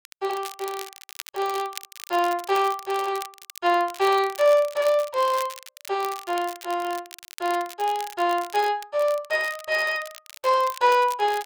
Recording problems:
crackle; vinyl, SNR 16 dB

